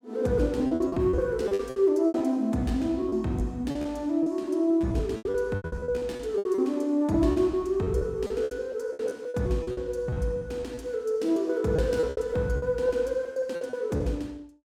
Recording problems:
lost packets; 15% of the sound replaced, filled with repeated pitch periods

